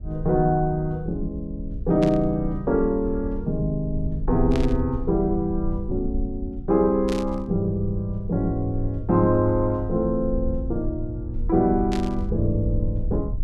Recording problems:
low-frequency rumble; below 72 Hz, SNR 9 dB
burst of static; 4 times, first at 2 s; peak -7 dB vs average level

